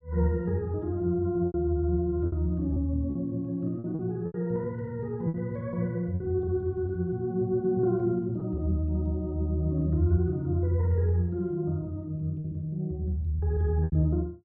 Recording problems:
packet loss; 4% of the sound replaced, filled with repeated pitch periods

